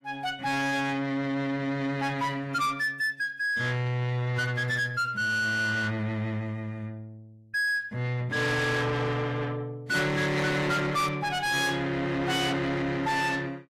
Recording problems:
codec artefacts; AAC, log-spectral distance 2 dB, nothing above 15.1 kHz
distortion; soft clipping, signal-to-distortion ratio 8 dB

